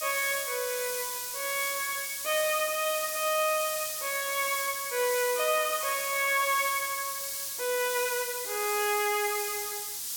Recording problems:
hiss; SNR 3 dB

